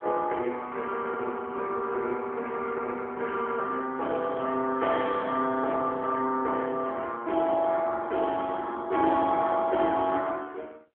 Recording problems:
telephone audio; 300 Hz to 3.3 kHz, AMR-NB

